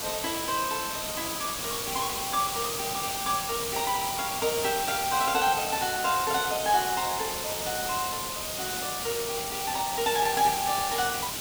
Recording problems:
hiss; SNR 2 dB

